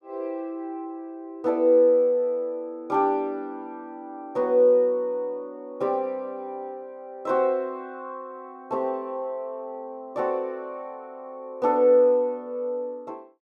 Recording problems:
none

